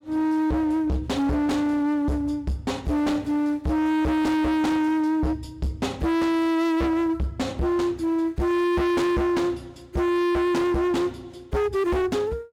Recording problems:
distortion; hard clipping, uneven, signal-to-distortion ratio 7 dB

